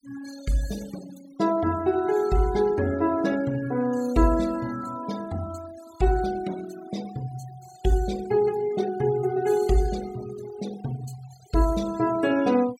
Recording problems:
noise reduction artefacts; signal-to-artefact ratio 18 dB

